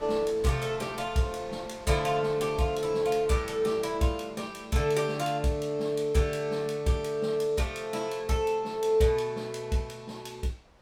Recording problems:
wind on the microphone; below 1.2 kHz, SNR 24 dB

